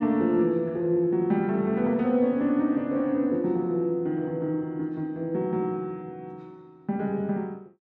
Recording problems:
none

